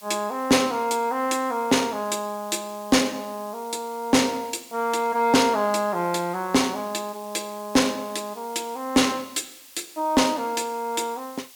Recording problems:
distortion; soft clipping, signal-to-distortion ratio 11 dB
background hiss; slope +2 dB per octave, SNR 21 dB

